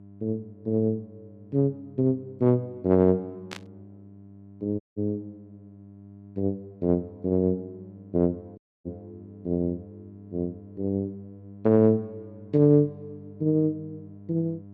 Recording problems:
hum; 50 Hz, harmonics up to 700 Hz, SNR 21 dB
burst of static; at 3.5 s; peak -7 dB vs average level
dropout; at 5 s and at 8.5 s

